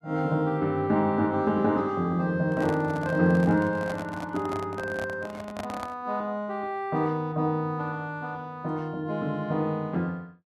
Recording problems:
handling noise; from 2.5 to 6 s; peak -4 dB vs average level

